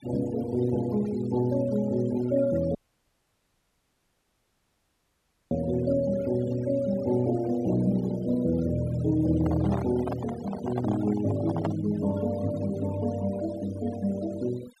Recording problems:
noise reduction artefacts; signal-to-artefact ratio 18 dB
dropout; at 3 s for 3 s
handling noise; from 9.5 to 12 s; peak -1 dB vs average level

